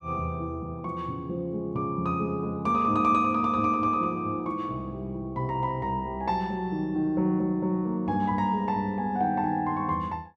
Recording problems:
none

